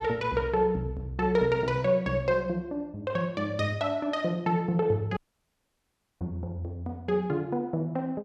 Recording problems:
audio cutting out; at 5 s for 1 s

